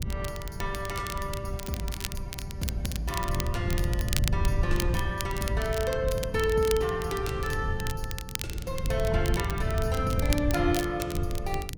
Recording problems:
wind noise; below 120 Hz, SNR 2 dB
crackle; vinyl, SNR 8 dB

